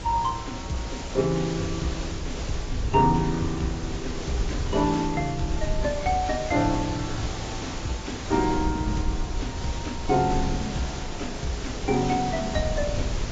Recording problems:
lossy compression; AAC, log-spectral distance 7 dB, nothing above 7.6 kHz
hiss; slope -4 dB per octave, SNR 8 dB
wind on the microphone; below 90 Hz, SNR 7 dB

